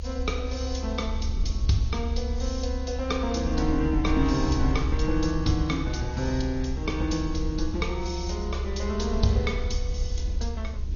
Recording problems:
codec artefacts; MP2, then Vorbis, log-spectral distance 4 dB, nothing above 6.7 kHz
background hiss; slope +2 dB per octave, SNR 26 dB
rumble; below 70 Hz, SNR 2 dB

